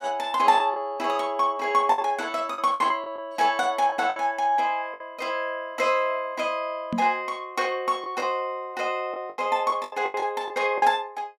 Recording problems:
lost packets; 7% of the sound replaced, filled with the last packet
knock on the microphone; at 7 s; peak 0 dB vs average level

